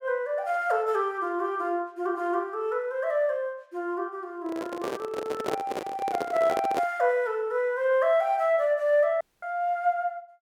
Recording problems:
handling noise; from 4.5 to 7 s; peak +1 dB vs average level
audio cutting out; at 9 s

